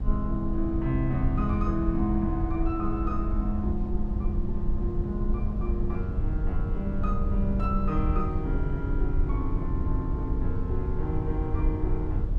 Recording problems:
rumble; below 80 Hz, SNR -1 dB

